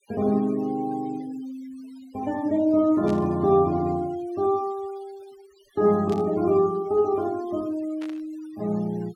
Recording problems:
denoising artefacts; signal-to-artefact ratio 25 dB
burst of static; at 3 s, at 6 s and at 8 s; peak -15 dB vs average level

